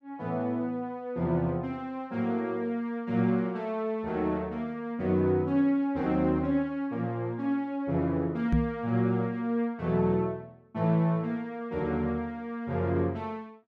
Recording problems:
microphone thump; at 8.5 s; peak +6 dB vs average level

